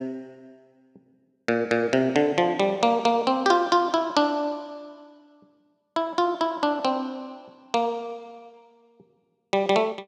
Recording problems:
none

